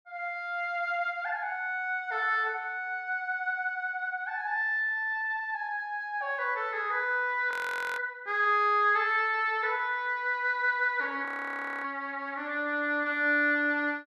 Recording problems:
audio freezing; at 7.5 s and at 11 s for 0.5 s

